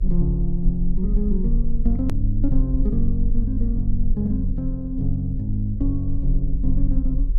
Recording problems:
electrical hum; 60 Hz, harmonics up to 540 Hz, SNR 28 dB
rumble; below 42 Hz, strongest tone 18 Hz, SNR 1 dB
click at an edit; at 2 s

